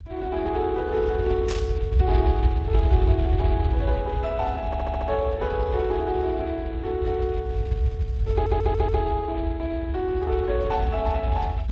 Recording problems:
lossy codec; Speex, log-spectral distance 2 dB
rumble; below 86 Hz, SNR 1 dB
burst of static; at 1.5 s; peak -3 dB vs average level
stutter; at 4.5 s and at 8.5 s

